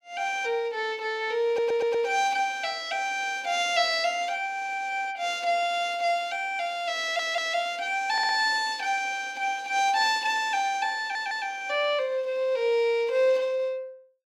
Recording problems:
audio stuttering; 4 times, first at 1.5 s

